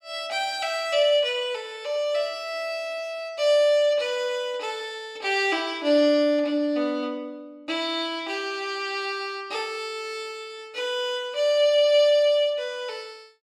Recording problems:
none

